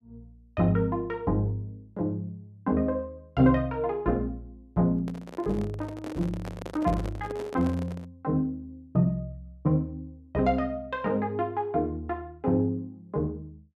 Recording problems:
handling noise; from 5 to 8 s; peak -6 dB vs average level

